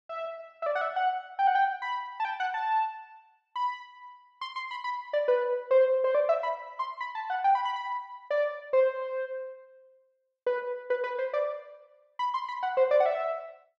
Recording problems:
none

